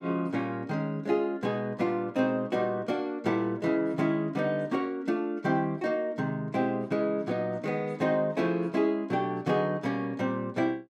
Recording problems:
none

